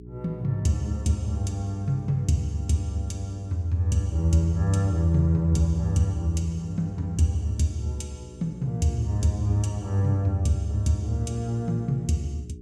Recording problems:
hum; 60 Hz, harmonics up to 420 Hz, SNR 18 dB

